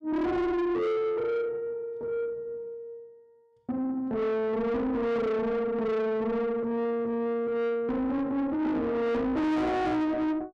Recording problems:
distorted audio; soft clipping, signal-to-distortion ratio 8 dB

